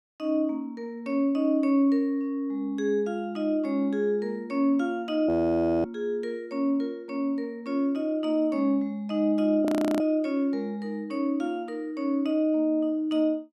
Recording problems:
frozen audio; at 5.5 s for 0.5 s and at 9.5 s

